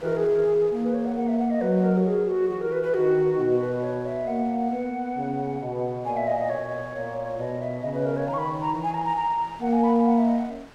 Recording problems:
wind noise; below 2 kHz, SNR 24 dB

